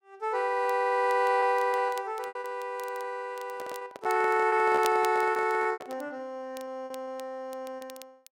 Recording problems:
crackle; vinyl, SNR 22 dB
packet loss; 11% of the sound replaced, filled with repeated pitch periods
handling noise; from 3.5 to 6 s; peak -5 dB vs average level

